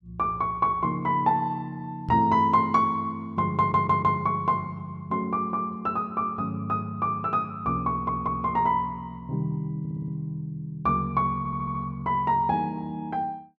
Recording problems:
microphone thump; at 2 s; peak 0 dB vs average level
audio stuttering; 4 times, first at 3.5 s

